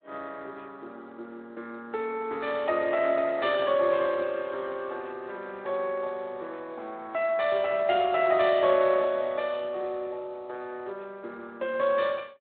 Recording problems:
phone line; 280 Hz to 3.6 kHz, Speex

